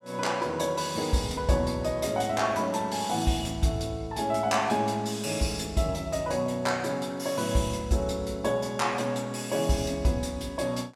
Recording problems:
none

